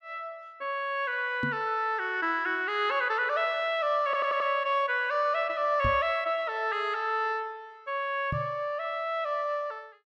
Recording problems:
microphone bump; at 1.5 s, at 6 s and at 8.5 s; peak 0 dB vs average level
audio stuttering; at 4 s

